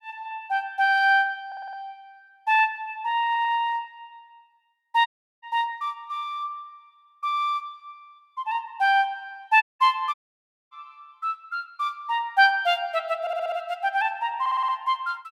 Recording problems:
stutter; 4 times, first at 1.5 s
dropout; at 5 s, at 9.5 s and at 10 s for 0.5 s

